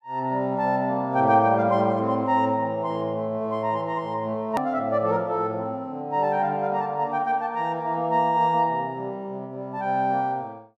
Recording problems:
click at an edit; at 4.5 s

